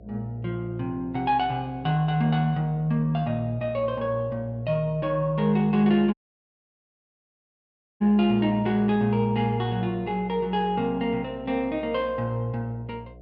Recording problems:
treble missing; nothing above 5.2 kHz
hum; 60 Hz, harmonics up to 720 Hz, SNR 22 dB
dropout; at 6 s for 2 s

